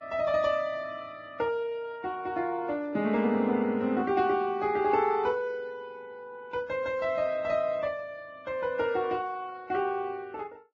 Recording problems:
lossy codec; Vorbis, log-spectral distance 2 dB, nothing above 6.2 kHz

